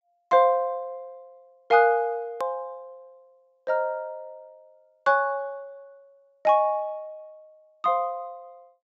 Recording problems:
low-pass filter; nothing above 7.7 kHz
click at an edit; at 2.5 s

